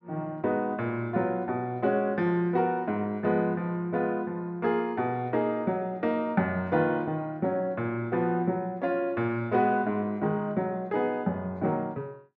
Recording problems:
none

